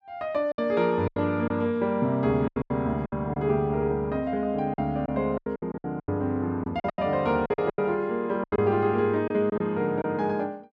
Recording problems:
lost packets; 12% of the sound replaced, filled with silence

